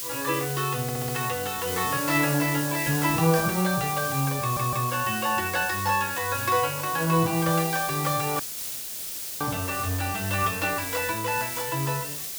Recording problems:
hiss; SNR 5 dB
stutter; at 1 s and at 4.5 s
dropout; at 8.5 s for 1 s

